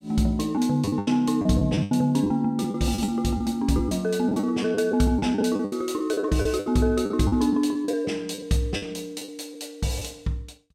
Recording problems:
lost packets; 12% of the sound replaced, filled with the last packet

